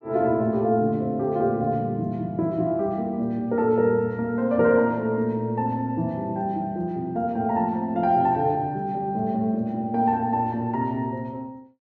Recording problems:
none

